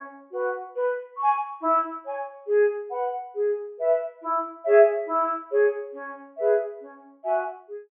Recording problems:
treble missing; nothing above 3.4 kHz

